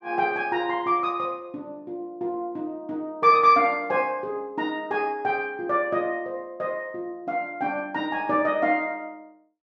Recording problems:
none

